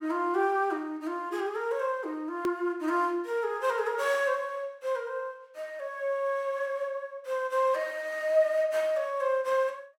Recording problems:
hard cut with a click; at 2.5 s

